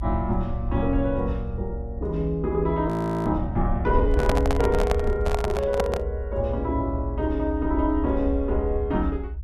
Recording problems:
low-frequency rumble; below 72 Hz, SNR 4 dB
frozen audio; at 3 s
handling noise; from 4 to 6 s; peak +3 dB vs average level

